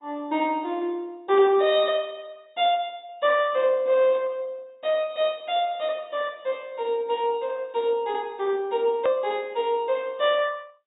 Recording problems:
treble cut off; nothing above 3.1 kHz
lossy codec; MP2, log-spectral distance 2 dB
click at an edit; at 9 s

